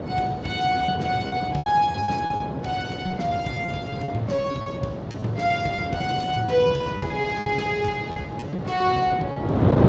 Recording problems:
lossy codec; Speex, log-spectral distance 3 dB
wind noise; below 520 Hz, SNR 5 dB
lost packets; 12% of the sound replaced, filled with repeated pitch periods

